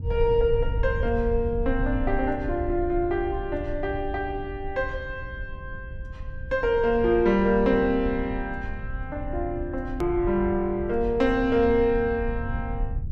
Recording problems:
rumble; below 80 Hz, SNR 9 dB
click at an edit; at 10 s

